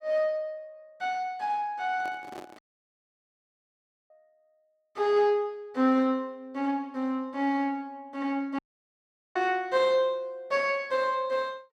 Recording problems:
microphone handling noise; at 2 s; peak -9 dB vs average level
dropout; at 2.5 s for 1.5 s and at 8.5 s for 1 s

